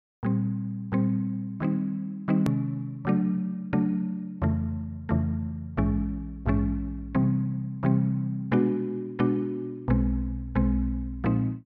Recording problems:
edit click; at 2.5 s

